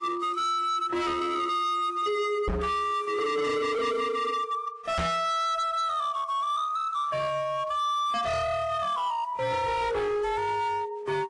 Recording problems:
codec artefacts; AAC, log-spectral distance 2 dB, nothing above 10.7 kHz
distorted audio; hard clipping, signal-to-distortion ratio 7 dB
microphone bump; at 2.5 s and at 5 s; peak +4 dB vs average level

